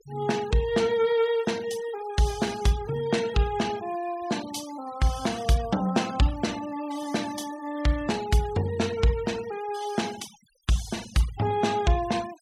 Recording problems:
denoising artefacts; signal-to-artefact ratio 18 dB

